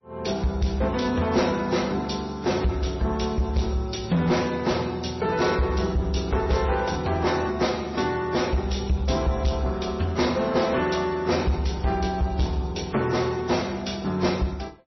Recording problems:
codec artefacts; AAC, then MP3, log-spectral distance 5 dB, nothing above 5.8 kHz
distorted audio; soft clipping, signal-to-distortion ratio 11 dB

